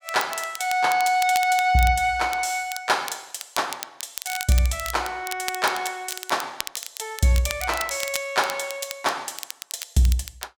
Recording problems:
crackle; vinyl, SNR 11 dB

